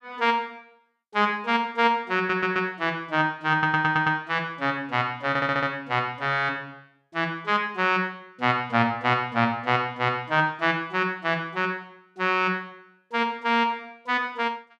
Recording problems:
audio stuttering; at 2 s, at 3.5 s and at 5.5 s

